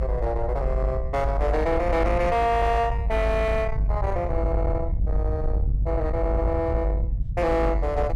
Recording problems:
distortion; soft clipping, signal-to-distortion ratio 11 dB
rumble; below 82 Hz, strongest tone 50 Hz, SNR 2 dB

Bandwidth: 14 kHz